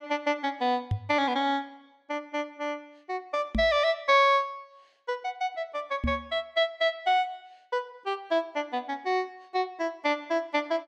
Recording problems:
microphone bump; at 1 s, at 3.5 s and at 6 s; peak +3 dB vs average level

